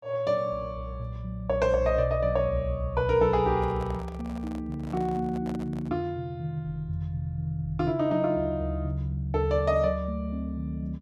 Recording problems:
handling noise; from 3.5 to 6 s; peak -9 dB vs average level

